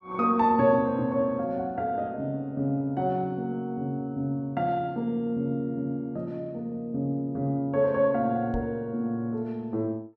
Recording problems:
microphone bump; at 8.5 s; peak -4 dB vs average level

